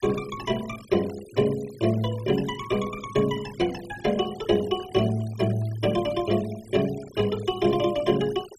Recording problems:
denoising artefacts; signal-to-artefact ratio 18 dB

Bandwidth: 14.5 kHz